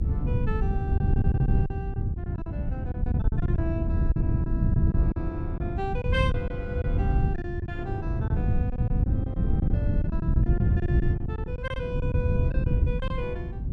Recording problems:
rumble; below 110 Hz, SNR 10 dB
wind on the microphone; below 130 Hz, SNR -9 dB
packet loss; 10% of the sound replaced, filled with silence

